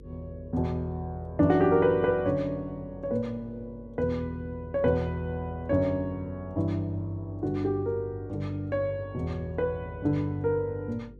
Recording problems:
mains hum; 50 Hz, harmonics up to 500 Hz, SNR 20 dB

